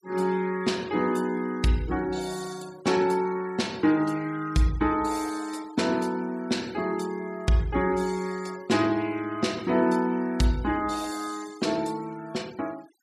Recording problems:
noise reduction artefacts; signal-to-artefact ratio 21 dB

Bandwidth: 15.5 kHz